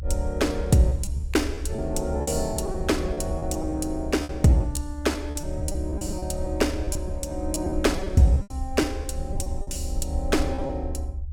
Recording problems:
low-frequency rumble; below 70 Hz, SNR 7 dB
lost packets; 11% of the sound replaced, filled with repeated pitch periods

